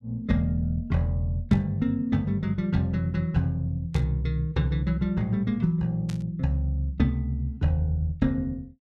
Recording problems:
static burst; at 1.5 s, at 4 s and at 6 s; peak -11 dB vs average level

